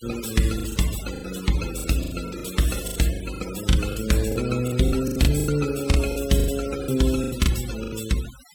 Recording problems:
denoising artefacts; signal-to-artefact ratio 13 dB
packet loss; 16% of the sound replaced, filled with the last packet

